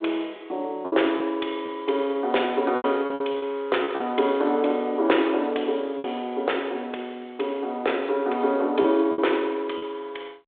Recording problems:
telephone audio; 300 Hz to 3.6 kHz, G.726
packet loss; 6% of the sound replaced, filled with repeated pitch periods

